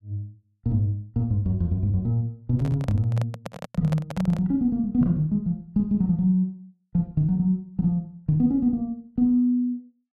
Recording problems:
microphone handling noise; from 2.5 to 4.5 s; peak -5 dB vs average level

